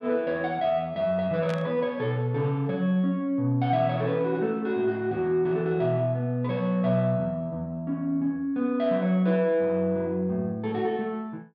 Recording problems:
static burst; at 1.5 s; peak -10 dB vs average level

